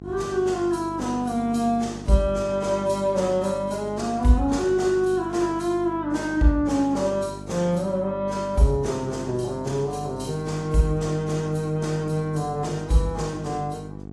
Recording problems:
lossy compression; AAC, log-spectral distance 2 dB
hum; 50 Hz, harmonics up to 850 Hz, SNR 14 dB

